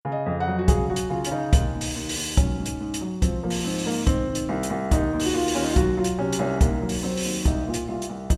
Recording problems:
none

